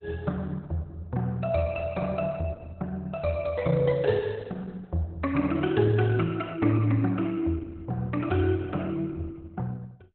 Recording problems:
lossy compression; Opus, log-spectral distance 3 dB, nothing above 4 kHz

